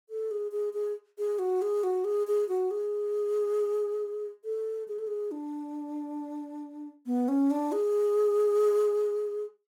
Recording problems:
none

